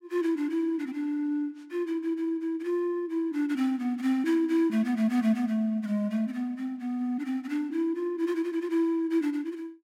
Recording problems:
none

